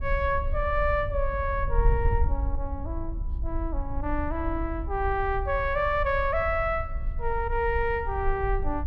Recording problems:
wind on the microphone; below 62 Hz, SNR 4 dB

